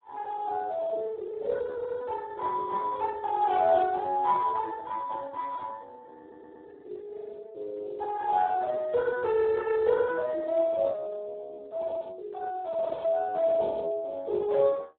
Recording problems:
phone line; 300 Hz to 2 kHz, Speex
stutter; at 6 s

